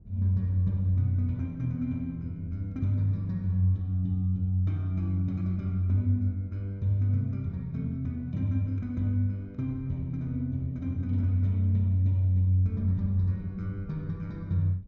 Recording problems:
wind on the microphone; below 130 Hz, SNR 22 dB

